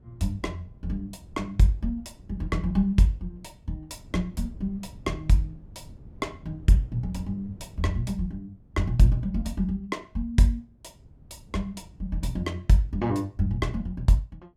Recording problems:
wind noise; below 150 Hz, SNR 21 dB

